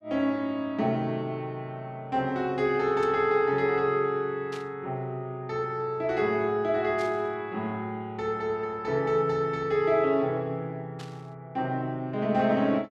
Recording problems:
burst of static; 4 times, first at 3 s; peak -11 dB vs average level

